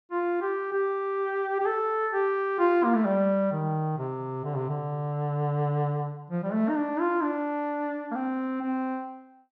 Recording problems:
none

